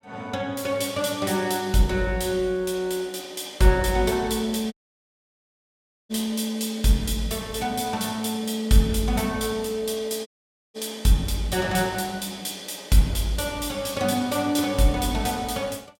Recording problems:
dropout; at 4.5 s for 1.5 s and at 10 s

